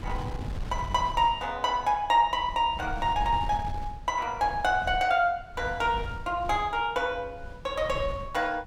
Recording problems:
wind on the microphone; below 110 Hz, SNR 13 dB

